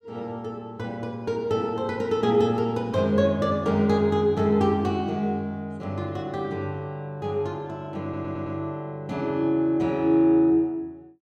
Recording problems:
stutter; at 8 s

